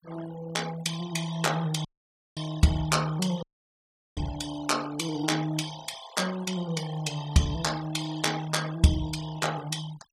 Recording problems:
denoising artefacts; signal-to-artefact ratio 15 dB
audio cutting out; at 2 s for 0.5 s and at 3.5 s for 0.5 s

